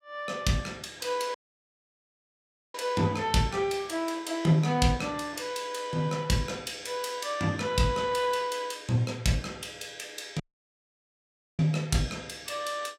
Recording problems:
audio cutting out; at 1.5 s for 1.5 s and at 10 s for 1 s

